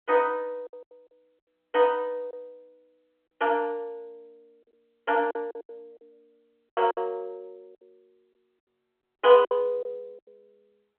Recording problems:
telephone audio; 320 Hz to 3.3 kHz, G.711
lost packets; 11% of the sound replaced, filled with silence

